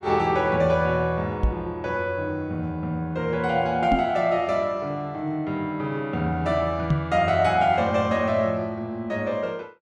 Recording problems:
knock on the microphone; at 1.5 s, at 4 s and at 7 s; peak +5 dB vs average level

